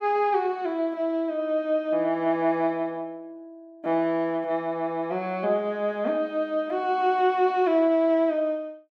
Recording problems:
none

